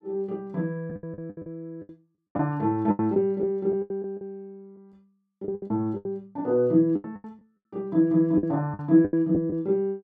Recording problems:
lost packets; 14% of the sound replaced, filled with the last packet

